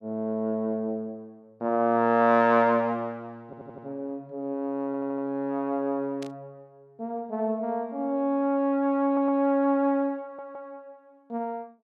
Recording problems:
stutter; 4 times, first at 3.5 s
burst of static; at 6 s; peak -13 dB vs average level

